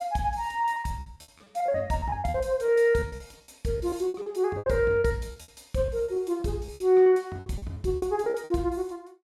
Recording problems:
lost packets; 17% of the sound replaced, filled with repeated pitch periods

